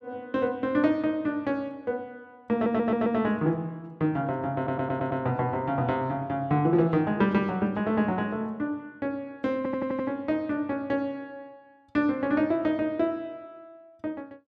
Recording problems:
stutter; at 2.5 s, at 4.5 s and at 9.5 s

